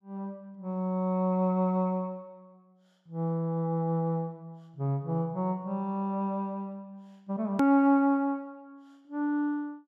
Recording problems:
click at an edit; at 7.5 s

